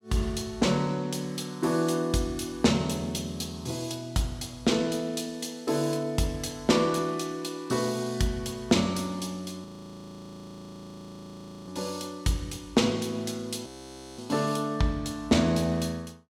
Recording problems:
audio freezing; at 9.5 s for 2 s and at 14 s for 0.5 s

